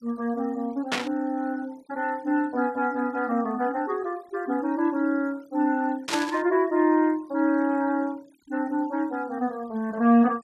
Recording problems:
denoising artefacts; signal-to-artefact ratio 28 dB
burst of static; at 1 s and at 6 s; peak +3 dB vs average level

